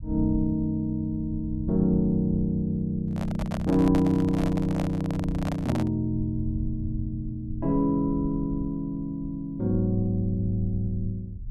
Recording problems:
low-frequency rumble; below 84 Hz, SNR 12 dB
microphone handling noise; from 3 to 6 s; peak -3 dB vs average level

